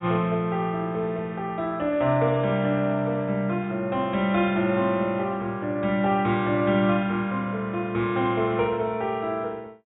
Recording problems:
low-pass filter; nothing above 4 kHz

